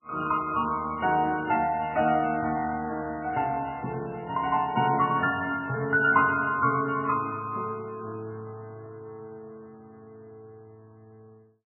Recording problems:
codec artefacts; MP3, log-spectral distance 3 dB, nothing above 2.5 kHz

